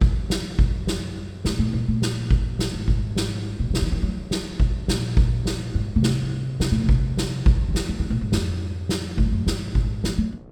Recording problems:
hum; 60 Hz, harmonics up to 1.4 kHz, SNR 25 dB
wind noise; below 280 Hz, SNR 24 dB

